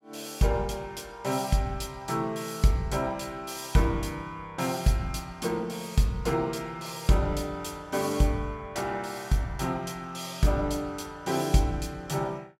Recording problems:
none

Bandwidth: 16 kHz